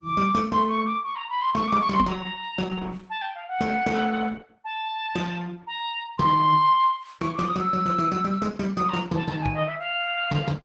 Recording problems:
codec artefacts; Opus, log-spectral distance 3 dB, nothing above 7.1 kHz
knock on the microphone; at 2 s and at 9.5 s; peak +2 dB vs average level

